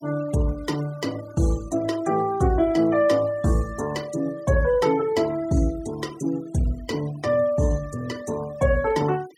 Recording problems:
noise reduction artefacts; signal-to-artefact ratio 21 dB

